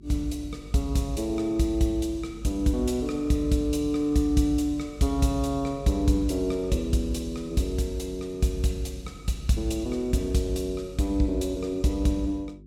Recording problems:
electrical hum; 50 Hz, harmonics up to 400 Hz, SNR 22 dB

